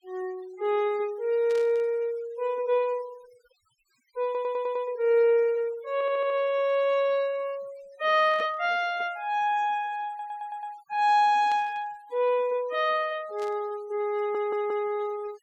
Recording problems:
denoising artefacts; signal-to-artefact ratio 25 dB
burst of static; 4 times, first at 1.5 s; peak -13 dB vs average level
audio stuttering; 4 times, first at 4.5 s

